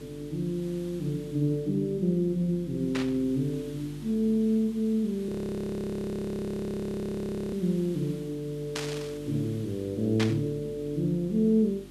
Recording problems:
electrical hum; 50 Hz, harmonics up to 450 Hz, SNR 18 dB
background hiss; slope -1 dB per octave, SNR 23 dB
static burst; at 3 s, at 9 s and at 10 s; peak +1 dB vs average level
frozen audio; at 5.5 s for 2 s

